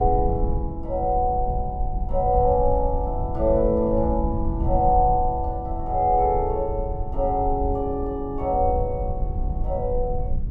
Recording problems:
low-frequency rumble; below 80 Hz, SNR 6 dB

